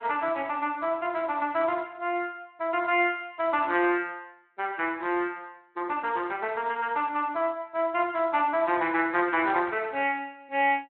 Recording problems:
telephone audio; 190 Hz to 3.1 kHz, Speex

